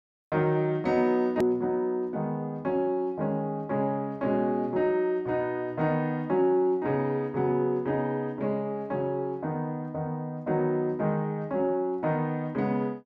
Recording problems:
click at an edit; at 1.5 s

